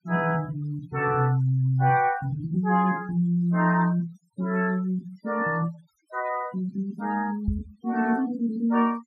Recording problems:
denoising artefacts; signal-to-artefact ratio 22 dB
microphone bump; at 7.5 s; peak +2 dB vs average level

